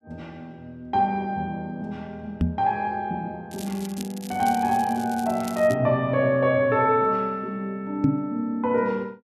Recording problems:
microphone thump; at 2.5 s and at 8 s; peak +7 dB vs average level
crackle; from 3.5 to 5.5 s; loose cable, SNR 17 dB

